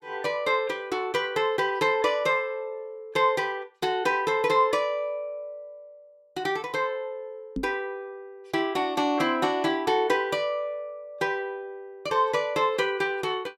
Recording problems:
microphone thump; at 7.5 s; peak -1 dB vs average level

